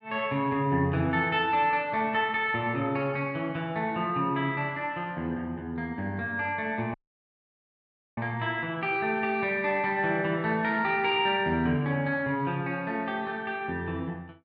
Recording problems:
audio cutting out; at 7 s for 1 s

